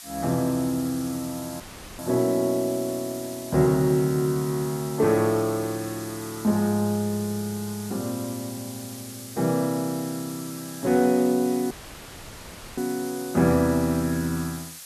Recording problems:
background hiss; slope +3 dB per octave, SNR 14 dB
audio cutting out; at 1.5 s and at 12 s for 1 s

